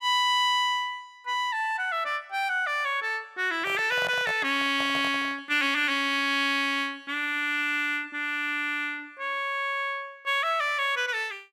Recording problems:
microphone handling noise; from 3.5 to 5.5 s; peak -6 dB vs average level

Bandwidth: 14.5 kHz